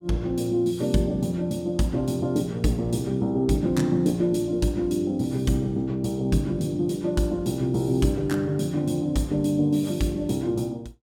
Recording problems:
none

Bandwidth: 17 kHz